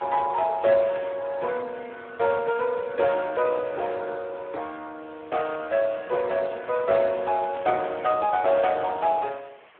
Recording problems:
telephone audio; 320 Hz to 2.7 kHz, Speex
background hiss; SNR 26 dB
burst of static; at 1 s, at 3 s and at 7.5 s; peak -14 dB vs average level

